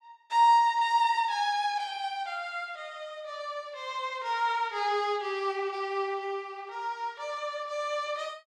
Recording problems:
none

